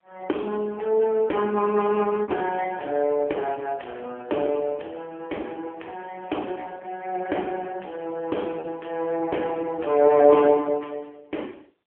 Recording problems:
phone line; 260 Hz to 3.6 kHz, AMR-NB
lost packets; 0.9% of the sound replaced, filled with repeated pitch periods

